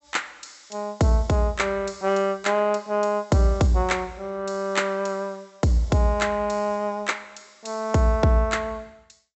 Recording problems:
treble cut off; nothing above 7.9 kHz

